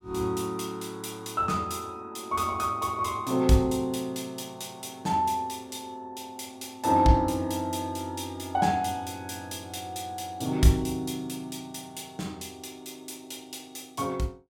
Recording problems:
none

